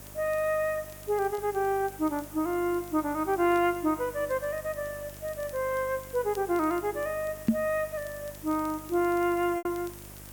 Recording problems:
hum; 50 Hz, harmonics up to 1.4 kHz, SNR 20 dB
background hiss; slope -3 dB per octave, SNR 16 dB
crackle; vinyl, SNR 28 dB
lost packets; 1.3% of the sound replaced, filled with repeated pitch periods
microphone bump; at 7.5 s; peak +9 dB vs average level

